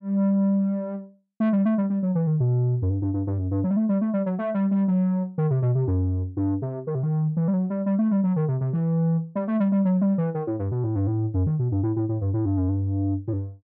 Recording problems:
distorted audio; soft clipping, signal-to-distortion ratio 12 dB

